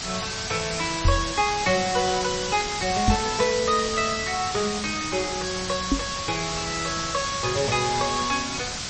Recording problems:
lossy compression; MP3, log-spectral distance 12 dB, nothing above 8.2 kHz
background hiss; slope +1 dB per octave, SNR 3 dB
knock on the microphone; at 1 s, at 3 s and at 6 s; peak +8 dB vs average level

